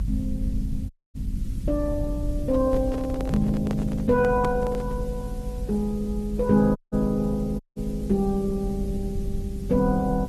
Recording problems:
lossy compression; Opus, log-spectral distance 2 dB
background hiss; slope +1 dB per octave, SNR 28 dB
rumble; below 84 Hz, SNR 7 dB
dropout; at 1 s, at 7 s and at 7.5 s
handling noise; from 2.5 to 5 s; peak -3 dB vs average level

